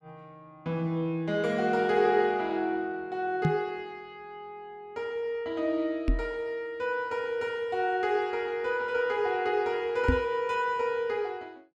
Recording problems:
microphone thump; at 3.5 s, at 6 s and at 10 s; peak +7 dB vs average level

